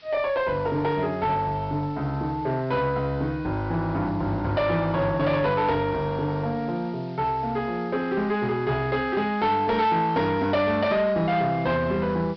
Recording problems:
treble cut off; nothing above 5.5 kHz
distortion; soft clipping, signal-to-distortion ratio 12 dB
hiss; SNR 27 dB

